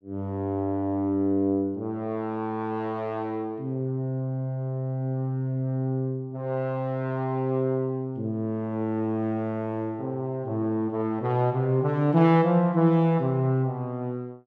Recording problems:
none

